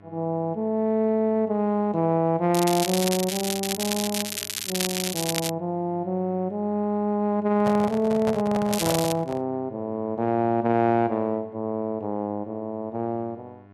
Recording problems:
mains hum; 50 Hz, harmonics up to 1.8 kHz, SNR 25 dB
crackle; from 2.5 to 5.5 s and at 8.5 s; loose cable, SNR 4 dB
handling noise; from 7.5 to 9.5 s; peak -1 dB vs average level

